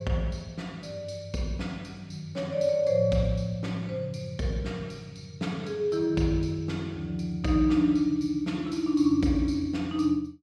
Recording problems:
none

